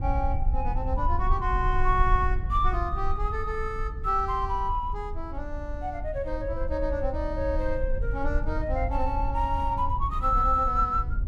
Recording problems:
rumble; below 60 Hz, SNR 3 dB

